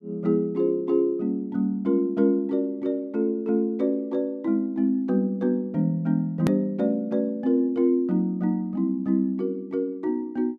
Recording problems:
hard cut with a click; at 6.5 s

